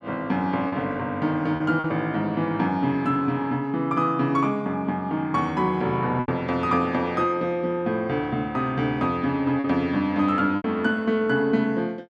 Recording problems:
lost packets; 3% of the sound replaced, filled with repeated pitch periods

